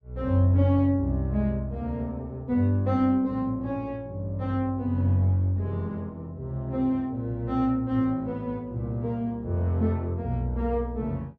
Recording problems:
none

